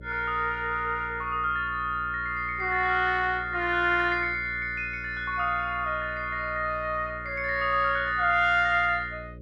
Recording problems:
mains hum; 60 Hz, harmonics up to 600 Hz, SNR 18 dB

